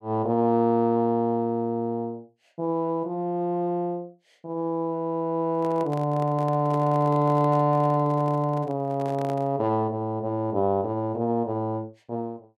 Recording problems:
microphone handling noise; from 5.5 to 9.5 s; peak -9 dB vs average level

